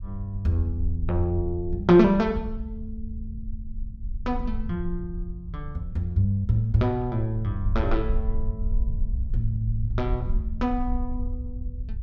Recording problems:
low-frequency rumble; below 62 Hz, SNR 7 dB

